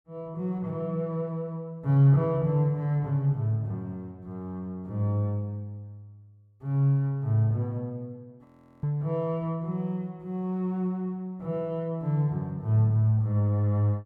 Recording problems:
frozen audio; at 8.5 s

